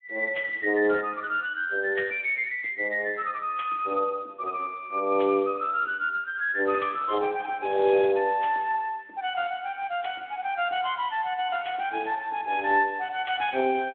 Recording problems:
phone line; 320 Hz to 3.4 kHz, Speex

